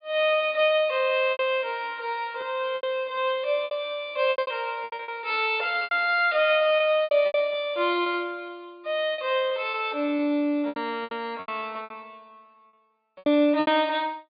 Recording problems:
treble missing; nothing above 4.7 kHz
packet loss; 12% of the sound replaced, filled with repeated pitch periods

